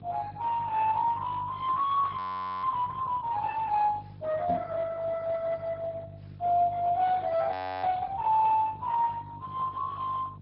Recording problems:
low-pass filter; nothing above 5.3 kHz
lossy codec; Speex, log-spectral distance 4 dB
electrical hum; 50 Hz, harmonics up to 350 Hz, SNR 16 dB
frozen audio; at 2 s and at 7.5 s
microphone bump; at 4.5 s; peak -2 dB vs average level

